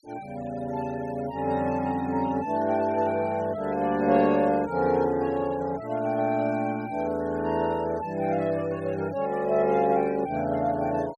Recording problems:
denoising artefacts; signal-to-artefact ratio 23 dB

